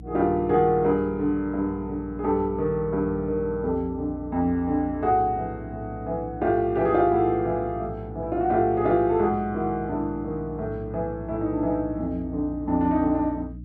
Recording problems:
hum; 60 Hz, harmonics up to 300 Hz, SNR 15 dB

